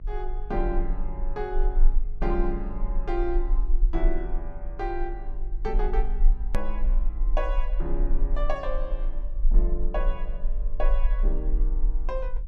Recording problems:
hum; 50 Hz, harmonics up to 500 Hz, SNR 15 dB
rumble; below 36 Hz, strongest tone 26 Hz, SNR -5 dB
hard cut with a click; at 6.5 s

